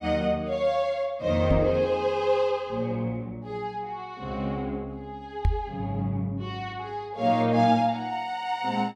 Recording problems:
microphone thump; at 1.5 s and at 5.5 s; peak +5 dB vs average level

